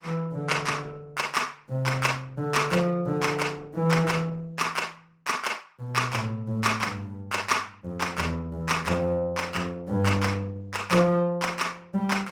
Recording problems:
codec artefacts; Opus, log-spectral distance 4 dB, nothing above 19 kHz

